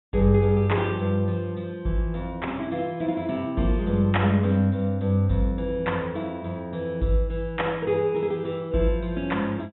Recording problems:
low-pass filter; nothing above 3.7 kHz

